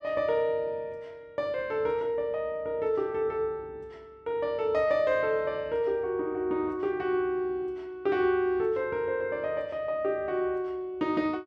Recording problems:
none

